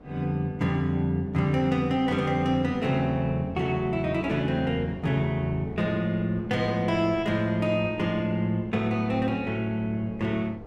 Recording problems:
wind on the microphone; below 480 Hz, SNR 19 dB

